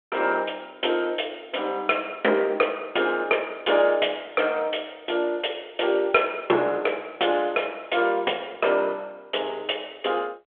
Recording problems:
telephone audio; 320 Hz to 3.4 kHz, G.726

